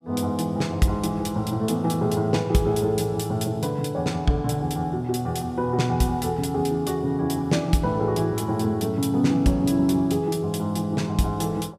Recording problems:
none

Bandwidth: 15.5 kHz